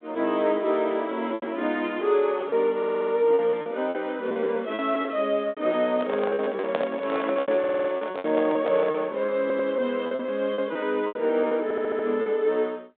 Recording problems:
telephone audio; 220 Hz to 3.7 kHz, G.726
lost packets; 12% of the sound replaced, filled with repeated pitch periods
audio stuttering; 4 times, first at 3 s
microphone handling noise; from 6 to 9 s; peak 0 dB vs average level

